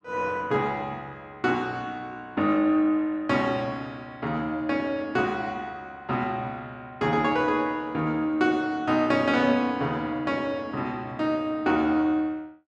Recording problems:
none

